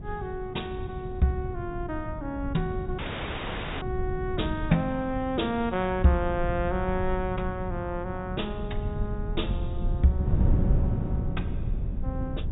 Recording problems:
low-pass filter; nothing above 4 kHz
low-frequency rumble; below 92 Hz, SNR 5 dB
wind noise; below 170 Hz, SNR 5 dB
audio cutting out; at 3 s for 1 s

